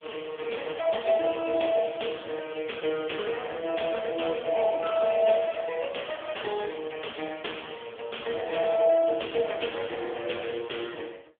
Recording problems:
telephone audio; 300 Hz to 3.4 kHz, AMR-NB
crackling; at 9.5 s; loose cable, SNR 24 dB

